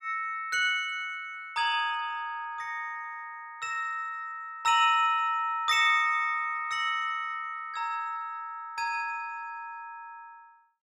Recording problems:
none

